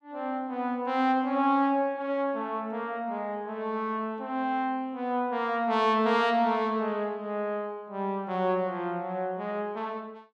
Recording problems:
none

